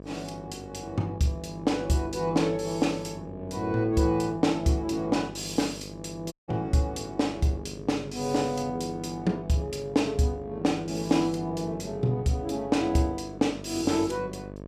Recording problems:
hum; 50 Hz, harmonics up to 1.2 kHz, SNR 14 dB
audio cutting out; at 6.5 s

